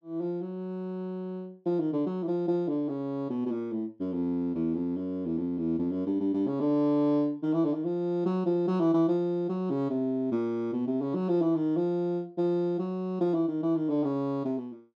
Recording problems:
none

